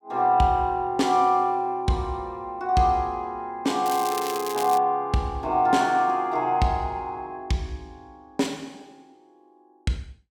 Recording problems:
crackling; at 4 s; loose cable, SNR 11 dB

